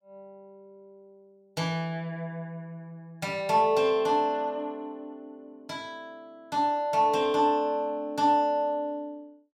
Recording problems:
none

